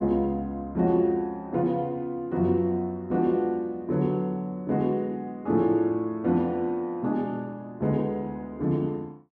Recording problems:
none

